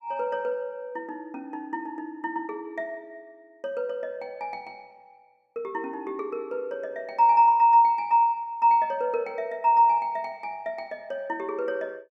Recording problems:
none

